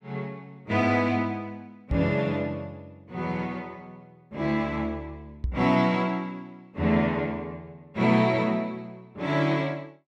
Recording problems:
microphone bump; at 2 s and at 5.5 s; peak +1 dB vs average level

